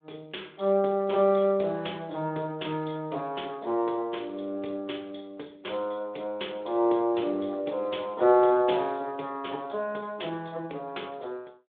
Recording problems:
phone line; 280 Hz to 3.6 kHz, Speex

